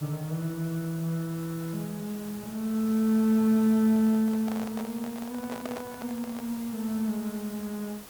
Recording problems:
hiss; slope -3 dB per octave, SNR 16 dB
microphone handling noise; from 4 to 6.5 s; peak -5 dB vs average level

